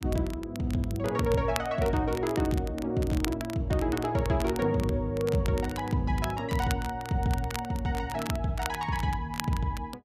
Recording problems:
crackle; vinyl, SNR 13 dB

